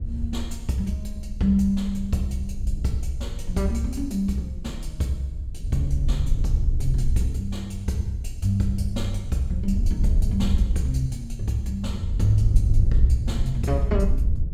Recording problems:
wind noise; below 72 Hz, SNR 1 dB

